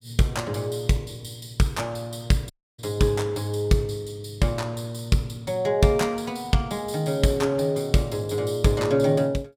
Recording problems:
dropout; at 2.5 s

